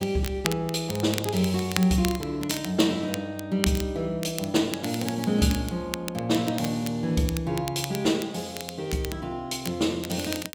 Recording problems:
crackle; vinyl, SNR 10 dB

